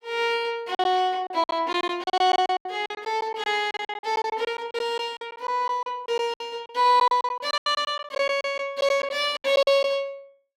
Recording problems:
lost packets; 15% of the sound replaced, filled with silence

